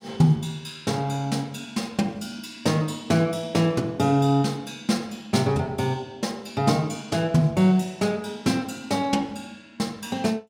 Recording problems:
none

